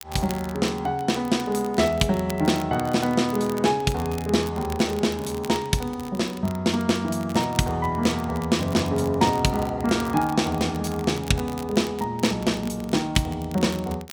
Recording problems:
crackle; vinyl, SNR 19 dB

